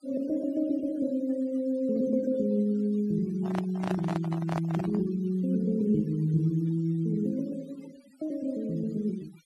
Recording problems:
denoising artefacts; signal-to-artefact ratio 25 dB
microphone handling noise; from 3.5 to 5 s; peak -2 dB vs average level

